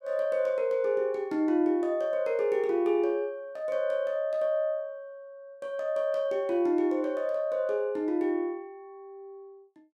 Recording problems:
none

